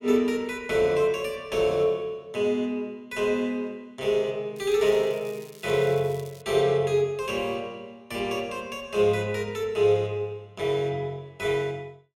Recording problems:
crackle; from 4.5 to 6.5 s; loose cable, SNR 24 dB

